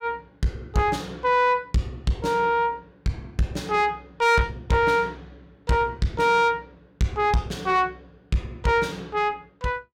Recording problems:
distortion; soft clipping, signal-to-distortion ratio 10 dB

